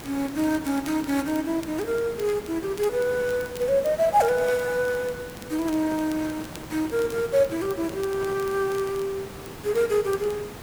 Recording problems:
background hiss; slope -5 dB per octave, SNR 14 dB
crackling; vinyl, SNR 23 dB
microphone handling noise; from 5.5 to 9 s; peak -10 dB vs average level

